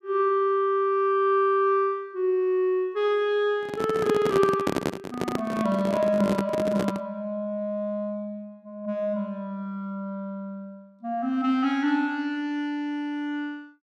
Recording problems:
microphone handling noise; from 3.5 to 7 s; peak +4 dB vs average level

